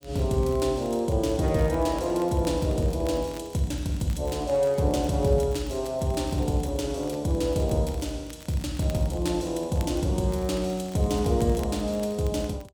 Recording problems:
crackle; vinyl, SNR 24 dB

